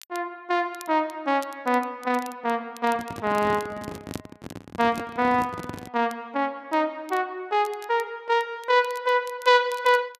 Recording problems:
crackle; vinyl, SNR 24 dB
handling noise; from 3 to 6 s; peak -4 dB vs average level

